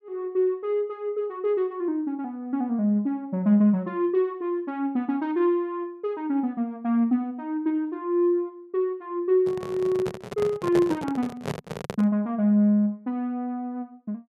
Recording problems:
handling noise; from 9.5 to 12 s; peak 0 dB vs average level

